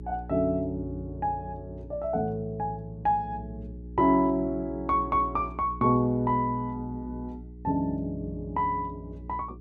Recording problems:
hum; 60 Hz, harmonics up to 420 Hz, SNR 14 dB

